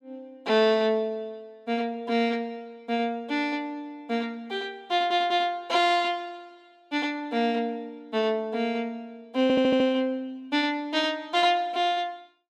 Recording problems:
stutter; at 5 s and at 9.5 s

